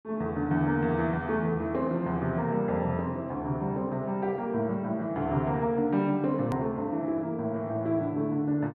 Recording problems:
edit click; at 6.5 s

